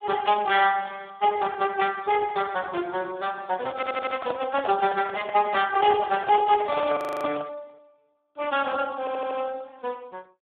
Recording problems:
telephone audio; 260 Hz to 2.9 kHz, Speex
microphone handling noise; from 3.5 to 7.5 s; peak -4 dB vs average level
stutter; at 4 s and at 9 s
audio freezing; at 7 s

